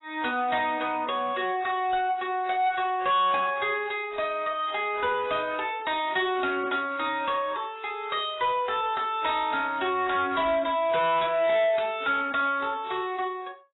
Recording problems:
codec artefacts; AAC, log-spectral distance 3 dB, nothing above 3.8 kHz
distortion; soft clipping, signal-to-distortion ratio 10 dB

